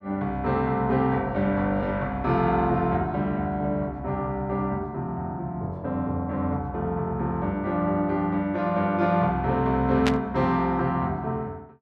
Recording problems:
burst of static; at 10 s; peak +3 dB vs average level

